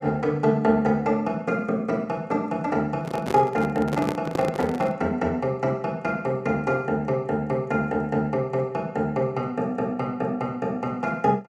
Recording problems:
handling noise; from 3 to 5 s; peak +1 dB vs average level

